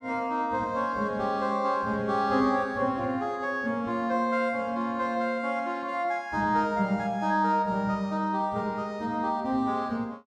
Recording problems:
none

